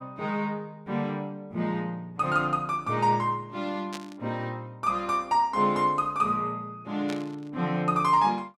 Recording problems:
burst of static; at 4 s and at 7 s; peak -7 dB vs average level

